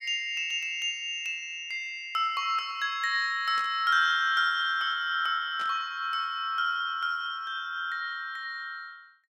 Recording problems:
static burst; at 3.5 s and at 5.5 s; peak -12 dB vs average level

